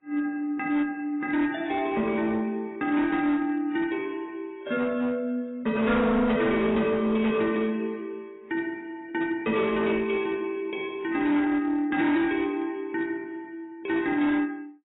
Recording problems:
lossy codec; AAC, log-spectral distance 2 dB, nothing above 3.6 kHz
distortion; hard clipping, uneven, signal-to-distortion ratio 11 dB

